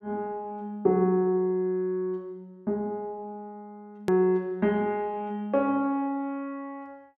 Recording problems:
click at an edit; at 4 s

